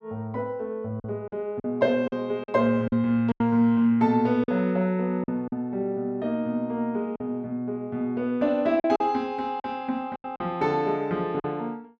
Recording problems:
packet loss; 6% of the sound replaced, filled with silence

